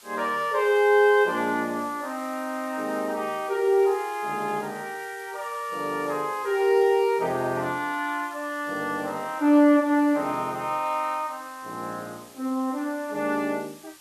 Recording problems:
hiss; slope +1 dB per octave, SNR 22 dB

